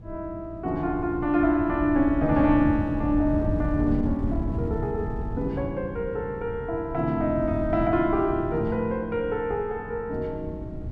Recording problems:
wind on the microphone; below 150 Hz, SNR 8 dB

